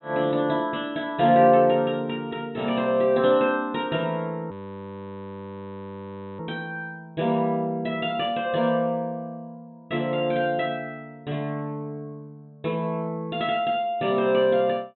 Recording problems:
treble cut off; nothing above 4 kHz
audio freezing; at 4.5 s for 2 s

